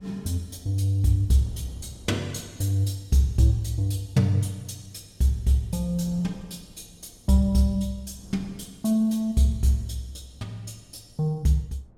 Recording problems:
wind noise; below 220 Hz, SNR 26 dB

